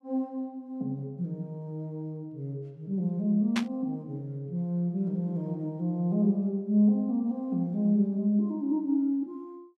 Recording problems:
static burst; at 3.5 s; peak +1 dB vs average level

